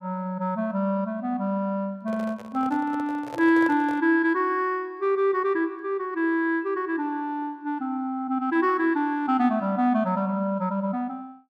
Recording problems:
handling noise; from 2 to 4 s; peak -8 dB vs average level

